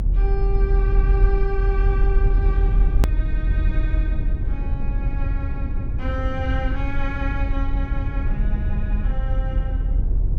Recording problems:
rumble; below 58 Hz, strongest tone 42 Hz, SNR -9 dB
edit click; at 3 s

